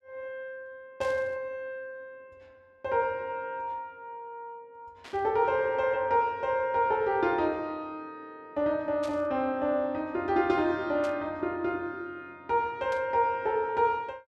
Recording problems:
burst of static; 5 times, first at 1 s; peak -11 dB vs average level

